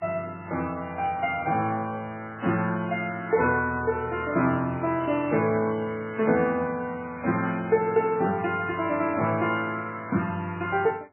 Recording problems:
lossy codec; MP3, log-spectral distance 3 dB, nothing above 2.8 kHz
burst of static; 4 times, first at 1 s; peak -9 dB vs average level

